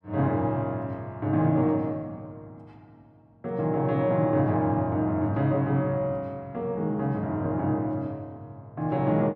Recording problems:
none

